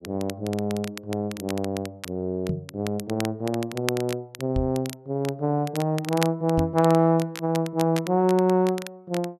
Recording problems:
crackling; vinyl, SNR 14 dB
knock on the microphone; at 2.5 s, at 4.5 s and at 6.5 s; peak +1 dB vs average level

